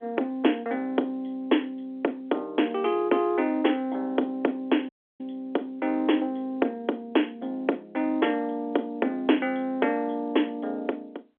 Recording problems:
telephone audio; 240 Hz to 3.4 kHz, G.711
audio cutting out; at 5 s

